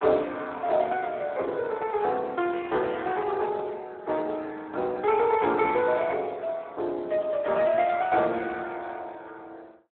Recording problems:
phone line; 280 Hz to 3.5 kHz, Speex

